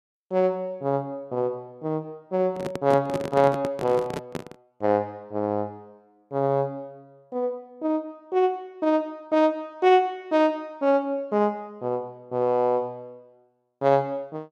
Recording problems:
microphone handling noise; from 2.5 to 4.5 s; peak -1 dB vs average level

